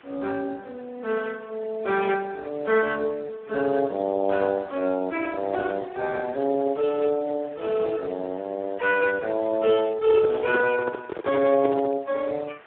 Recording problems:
phone line; 300 Hz to 2.6 kHz, Speex
hiss; SNR 26 dB
handling noise; from 10 to 12 s; peak +3 dB vs average level

